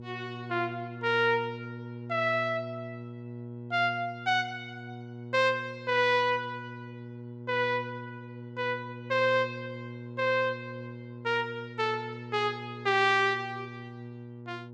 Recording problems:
hum; 60 Hz, harmonics up to 960 Hz, SNR 13 dB

